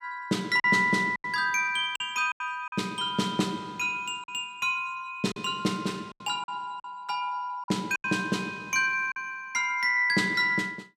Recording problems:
packet loss; 6% of the sound replaced, filled with silence

